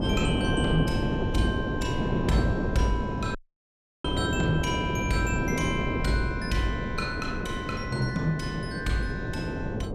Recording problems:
wind noise; below 390 Hz, SNR 0 dB
dropout; at 3.5 s for 0.5 s

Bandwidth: 15.5 kHz